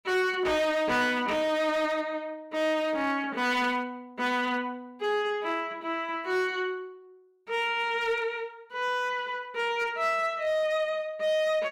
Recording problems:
distorted audio; hard clipping, signal-to-distortion ratio 11 dB

